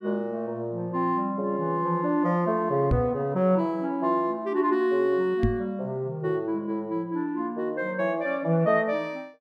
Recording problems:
microphone thump; at 3 s and at 5.5 s; peak +5 dB vs average level

